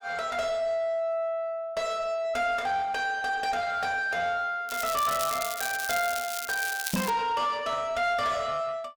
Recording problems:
distortion; soft clipping, signal-to-distortion ratio 10 dB
crackling; from 4.5 to 7 s; loose cable, SNR 6 dB
microphone thump; at 7 s; peak +4 dB vs average level

